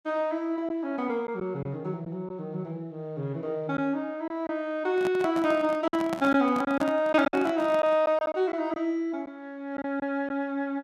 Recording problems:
packet loss; 4% of the sound replaced, filled with silence
microphone handling noise; from 5 to 8 s; peak -1 dB vs average level

